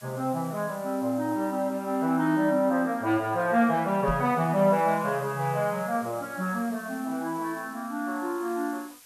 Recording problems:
background hiss; SNR 22 dB
microphone thump; at 4 s; peak +1 dB vs average level

